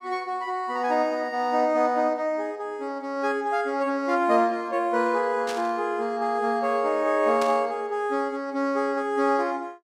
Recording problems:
burst of static; at 5.5 s and at 7.5 s; peak -6 dB vs average level

